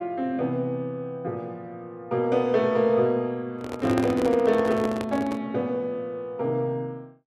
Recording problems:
microphone handling noise; from 3.5 to 5.5 s; peak +1 dB vs average level

